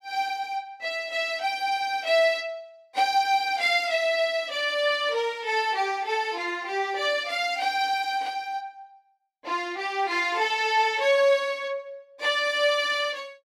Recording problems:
none

